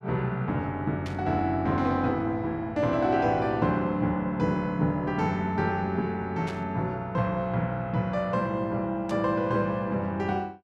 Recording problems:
static burst; at 1 s, at 6.5 s and at 9 s; peak -10 dB vs average level

